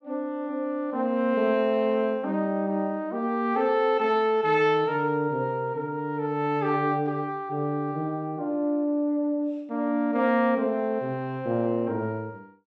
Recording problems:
none

